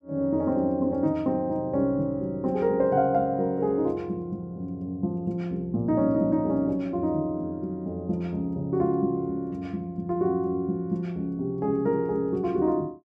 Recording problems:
none

